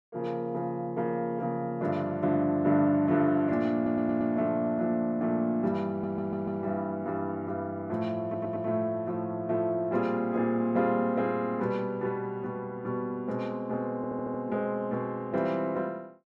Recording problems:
audio stuttering; 4 times, first at 4 s

